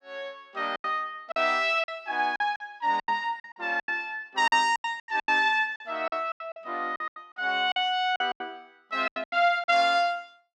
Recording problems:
packet loss; 15% of the sound replaced, filled with silence

